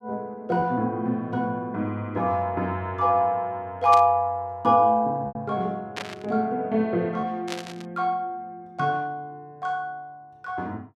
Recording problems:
packet loss; 1.1% of the sound replaced, filled with repeated pitch periods
static burst; at 4 s, at 6 s and at 7.5 s; peak -3 dB vs average level

